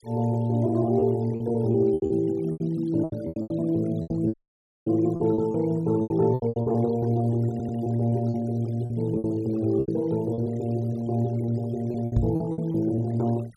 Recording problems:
noise reduction artefacts; signal-to-artefact ratio 25 dB
lost packets; 13% of the sound replaced, filled with repeated pitch periods
microphone bump; at 4 s and at 12 s; peak +6 dB vs average level
dropout; at 4.5 s for 0.5 s
audio stuttering; at 7.5 s

